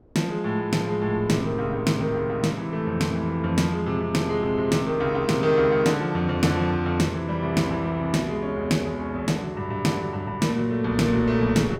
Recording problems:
wind noise; below 440 Hz, SNR 20 dB

